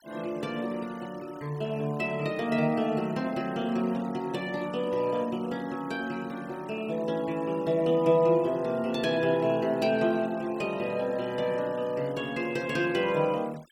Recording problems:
denoising artefacts; signal-to-artefact ratio 23 dB

